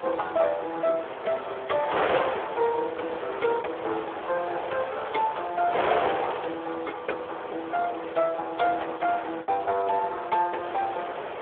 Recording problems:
telephone audio; 340 Hz to 3.4 kHz, Speex
wind on the microphone; below 1.4 kHz, SNR 5 dB
packet loss; 1.4% of the sound replaced, filled with the last packet

